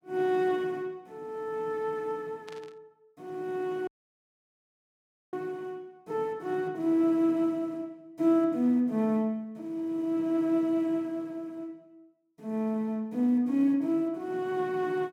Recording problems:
burst of static; at 2.5 s; peak -14 dB vs average level
audio cutting out; at 4 s for 1.5 s

